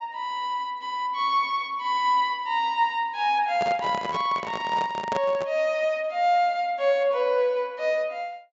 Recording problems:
treble missing; nothing above 8 kHz
microphone handling noise; from 3.5 to 5.5 s; peak -2 dB vs average level

